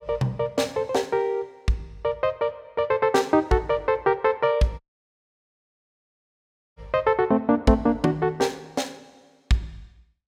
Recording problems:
audio cutting out; at 5 s for 2 s

